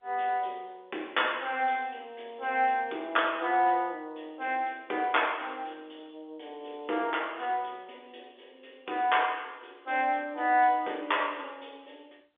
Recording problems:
telephone audio; 280 Hz to 3.6 kHz, G.711

